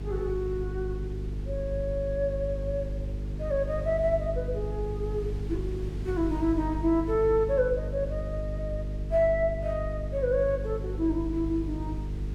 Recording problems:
hum; 50 Hz, harmonics up to 450 Hz, SNR 5 dB
wind on the microphone; below 120 Hz, SNR 15 dB

